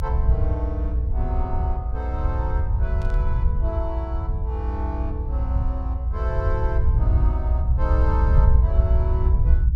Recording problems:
low-frequency rumble; below 78 Hz, SNR -10 dB
burst of static; at 3 s; peak -11 dB vs average level

